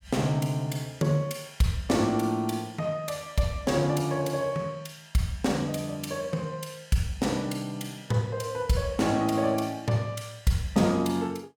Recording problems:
none

